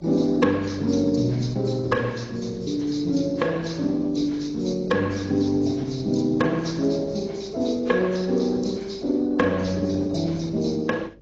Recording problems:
codec artefacts; Opus, then AAC, log-spectral distance 4 dB, nothing above 6.3 kHz
hum; 50 Hz, harmonics up to 600 Hz, SNR 26 dB

